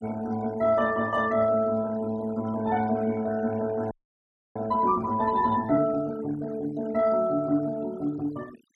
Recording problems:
denoising artefacts; signal-to-artefact ratio 20 dB
frozen audio; at 4 s for 0.5 s

